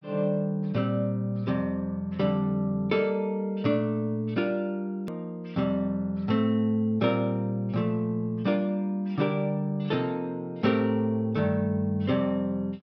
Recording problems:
treble missing; nothing above 5.5 kHz
edit click; at 5 s

